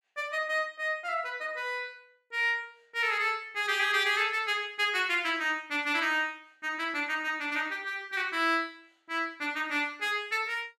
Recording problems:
none

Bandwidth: 15 kHz